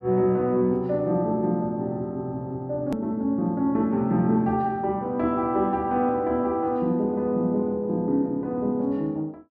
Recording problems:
edit click; at 3 s

